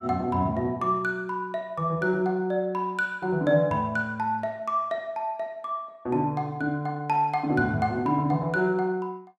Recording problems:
none

